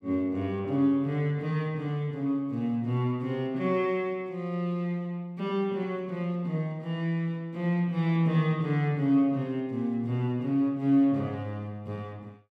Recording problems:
none

